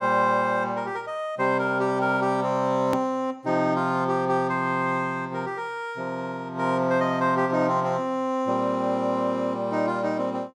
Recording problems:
hard cut with a click; at 3 s

